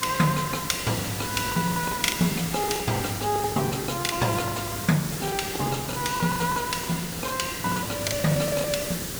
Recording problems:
mains hum; 60 Hz, harmonics up to 540 Hz, SNR 24 dB
background hiss; SNR 5 dB
packet loss; 19% of the sound replaced, filled with the last packet

